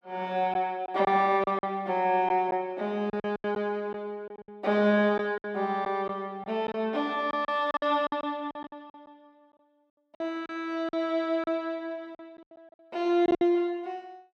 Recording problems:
packet loss; 10% of the sound replaced, filled with silence

